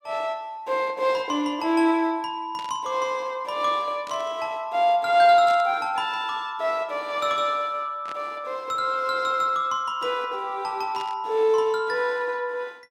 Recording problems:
static burst; 5 times, first at 2.5 s; peak -11 dB vs average level

